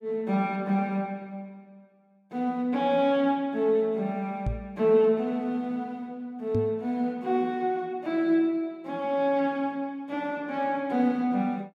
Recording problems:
microphone bump; at 4.5 s and at 6.5 s; peak +2 dB vs average level

